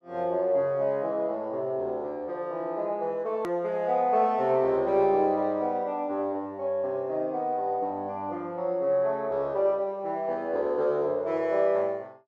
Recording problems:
click at an edit; at 3.5 s

